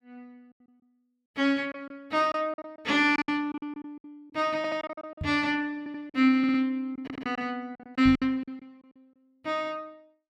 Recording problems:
lost packets; 11% of the sound replaced, filled with silence
audio stuttering; 4 times, first at 4.5 s
microphone bump; at 5 s and at 8 s; peak -2 dB vs average level

